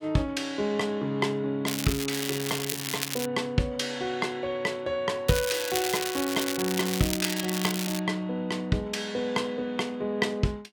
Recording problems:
crackling; from 1.5 to 3.5 s and from 5.5 to 8 s; loose cable, SNR 3 dB

